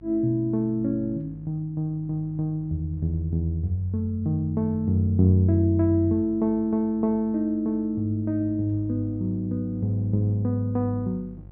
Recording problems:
electrical hum; 50 Hz, harmonics up to 550 Hz, SNR 22 dB

